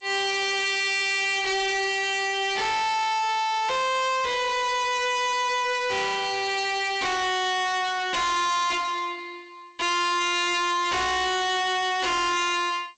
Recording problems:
lossy codec; G.722, log-spectral distance 5 dB, nothing above 7.8 kHz
distortion; soft clipping, signal-to-distortion ratio 5 dB

